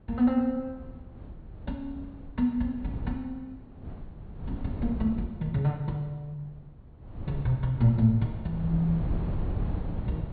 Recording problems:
treble missing; nothing above 4.5 kHz
wind noise; below 170 Hz, SNR 8 dB

